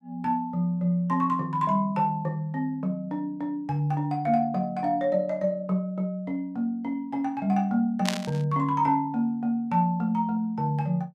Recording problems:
burst of static; at 8 s; peak +4 dB vs average level

